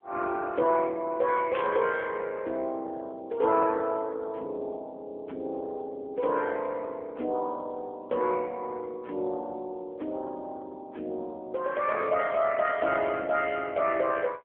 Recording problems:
phone line; 340 Hz to 3.1 kHz, AMR-NB
static burst; at 1.5 s; peak -5 dB vs average level

